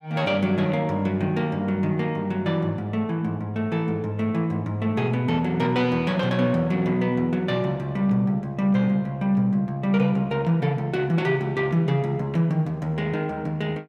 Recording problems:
none

